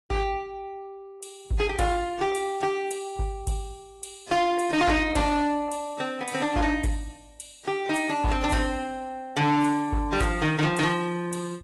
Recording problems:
lossy compression; AAC, log-spectral distance 3 dB, nothing above 11.3 kHz
distortion; hard clipping, uneven, signal-to-distortion ratio 10 dB

